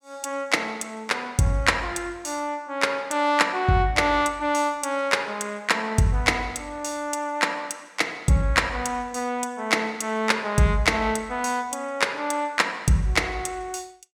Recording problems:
none

